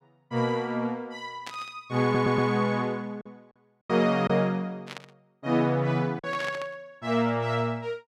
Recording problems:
lost packets; 3% of the sound replaced, filled with silence
static burst; at 1.5 s, at 5 s and at 6.5 s; peak -7 dB vs average level
stutter; at 2 s

